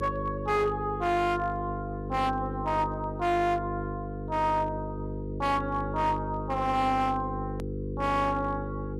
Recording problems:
distorted audio; hard clipping, uneven, signal-to-distortion ratio 10 dB
electrical hum; 50 Hz, harmonics up to 500 Hz, SNR 7 dB
hard cut with a click; at 7.5 s

